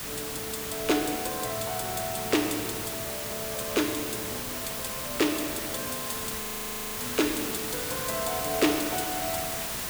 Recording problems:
hum; 50 Hz, harmonics up to 1 kHz, SNR 24 dB
background hiss; slope -1 dB per octave, SNR 1 dB
audio freezing; at 6.5 s for 0.5 s

